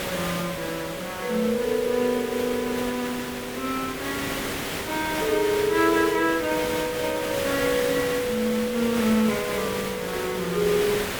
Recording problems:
hiss; slope -3 dB per octave, SNR 5 dB

